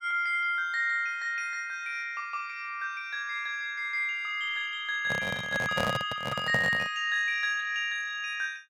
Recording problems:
microphone handling noise; from 5 to 7 s; peak +2 dB vs average level

